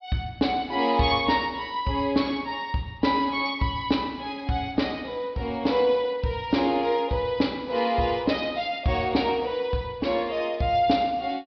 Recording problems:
treble missing; nothing above 5.5 kHz

